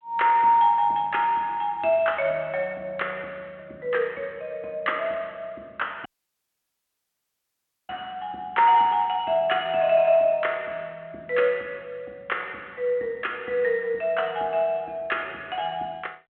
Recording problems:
phone line; 260 Hz to 3.2 kHz, G.726
audio cutting out; at 6 s for 2 s

